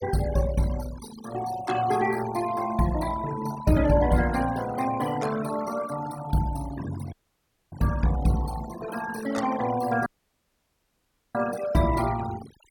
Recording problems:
noise reduction artefacts; signal-to-artefact ratio 13 dB
audio cutting out; at 7 s for 0.5 s and at 10 s for 1.5 s

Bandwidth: 17 kHz